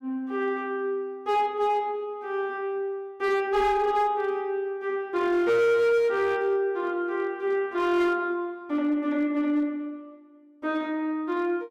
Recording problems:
distorted audio; hard clipping, signal-to-distortion ratio 12 dB

